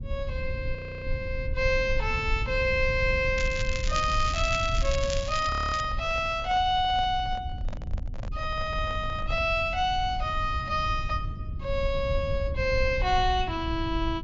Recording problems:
low-pass filter; nothing above 7.3 kHz
low-frequency rumble; below 84 Hz, SNR 7 dB
frozen audio; at 1 s and at 5.5 s
crackle; from 3.5 to 6 s; loose cable, SNR 10 dB
handling noise; from 5.5 to 9.5 s; peak -10 dB vs average level

